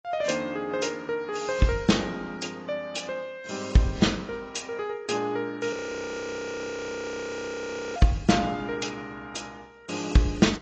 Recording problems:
lossy codec; AAC, log-spectral distance 6 dB, nothing above 7.3 kHz
audio freezing; at 5.5 s for 2 s

